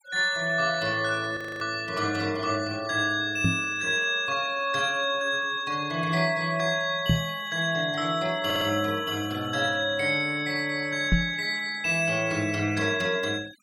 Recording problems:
noise reduction artefacts; signal-to-artefact ratio 20 dB
frozen audio; at 1.5 s
microphone thump; at 3.5 s, at 7 s and at 11 s; peak +6 dB vs average level
audio stuttering; at 8.5 s

